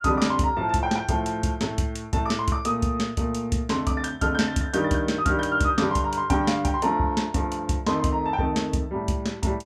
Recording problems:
none

